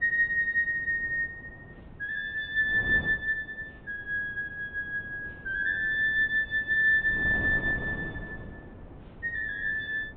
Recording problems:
treble missing; nothing above 4 kHz
wind noise; below 380 Hz, SNR 17 dB

